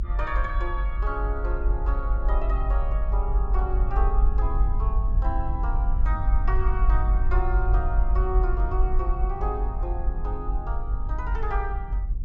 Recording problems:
treble cut off; nothing above 8 kHz
low-frequency rumble; below 50 Hz, SNR -7 dB

